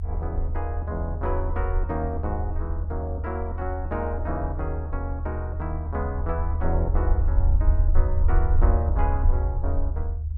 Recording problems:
low-frequency rumble; below 78 Hz, SNR -5 dB

